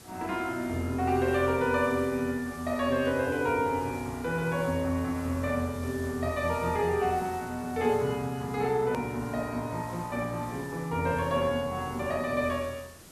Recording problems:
hiss; SNR 19 dB
hard cut with a click; at 9 s

